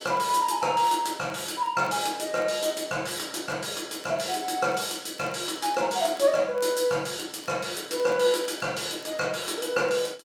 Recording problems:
crackle; vinyl, SNR 28 dB

